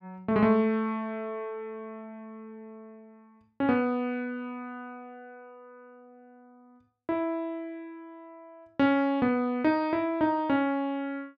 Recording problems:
none

